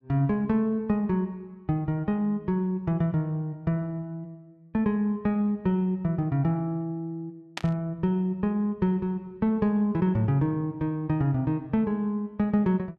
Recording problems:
burst of static; at 7.5 s; peak -2 dB vs average level

